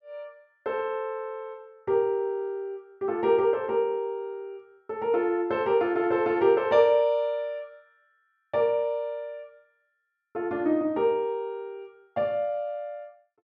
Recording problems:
none

